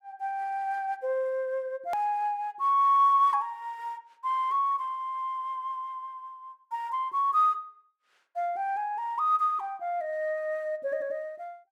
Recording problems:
hard cut with a click; at 2 s

